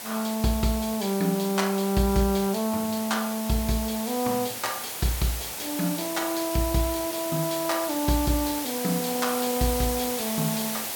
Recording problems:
background hiss; slope -1 dB per octave, SNR 5 dB

